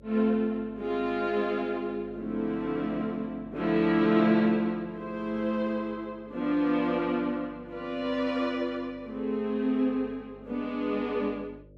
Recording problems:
hum; 50 Hz, harmonics up to 600 Hz, SNR 25 dB

